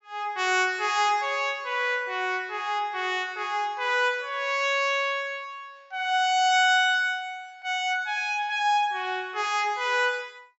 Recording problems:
treble cut off; nothing above 8 kHz

